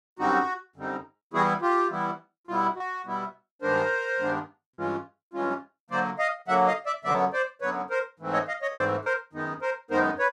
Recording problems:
packet loss; 3% of the sound replaced, filled with repeated pitch periods

